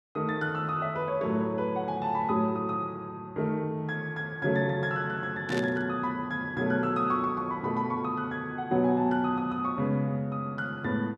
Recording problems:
burst of static; at 5.5 s; peak -5 dB vs average level

